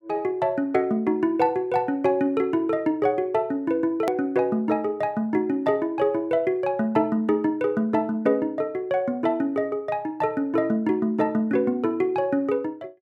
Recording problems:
edit click; at 4 s

